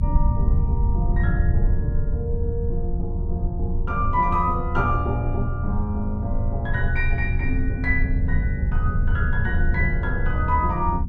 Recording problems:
low-frequency rumble; below 82 Hz, SNR -2 dB

